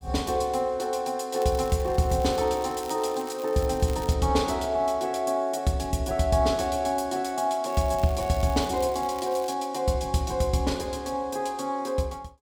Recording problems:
crackle; from 1.5 to 4 s and from 7.5 to 9.5 s; loose cable, SNR 20 dB

